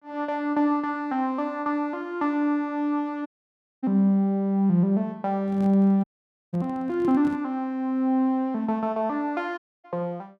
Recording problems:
audio cutting out; at 3.5 s for 0.5 s, at 6 s and at 9.5 s
microphone handling noise; from 5.5 to 7.5 s; peak -11 dB vs average level

